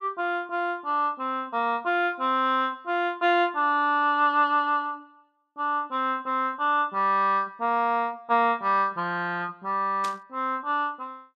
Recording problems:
burst of static; at 10 s; peak -8 dB vs average level

